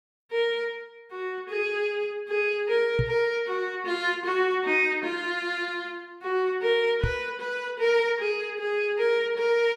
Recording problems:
knock on the microphone; at 3 s and at 7 s; peak +3 dB vs average level

